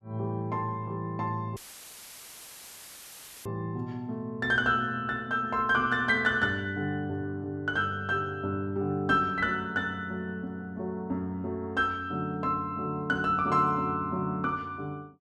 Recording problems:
audio cutting out; at 1.5 s for 2 s; filled with static

